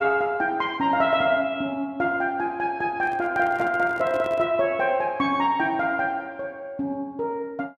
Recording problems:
handling noise; from 3 to 4.5 s; peak -9 dB vs average level

